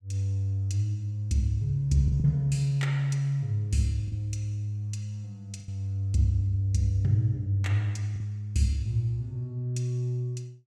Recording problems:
packet loss; 2% of the sound replaced, filled with the last packet

